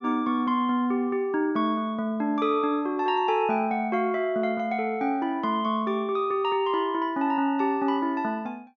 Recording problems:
treble missing; nothing above 6.6 kHz

